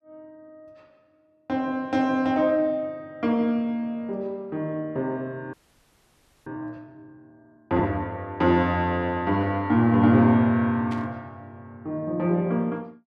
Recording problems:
frozen audio; at 5.5 s for 1 s
burst of static; at 11 s; peak -13 dB vs average level

